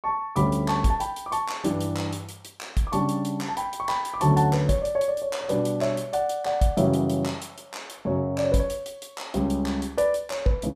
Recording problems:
none

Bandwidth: 15 kHz